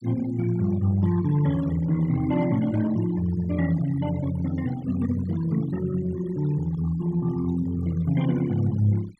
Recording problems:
noise reduction artefacts; signal-to-artefact ratio 18 dB

